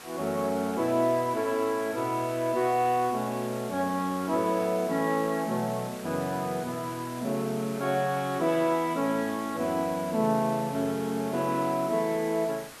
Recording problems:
hiss; slope -2 dB per octave, SNR 16 dB

